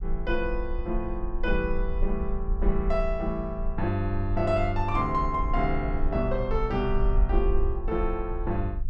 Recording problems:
low-frequency rumble; below 48 Hz, SNR 3 dB

